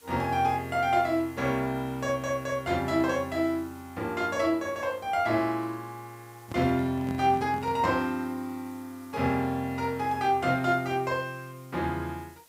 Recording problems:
background hiss; slope -1 dB per octave, SNR 26 dB
handling noise; from 6.5 to 8 s; peak -7 dB vs average level

